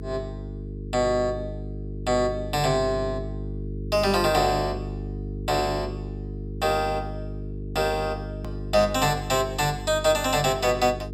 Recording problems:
hum; 50 Hz, harmonics up to 450 Hz, SNR 10 dB
click at an edit; at 8.5 s

